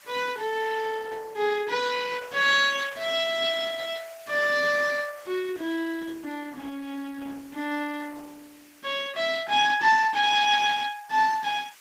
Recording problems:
lossy codec; Opus, log-spectral distance 5 dB
hiss; SNR 26 dB

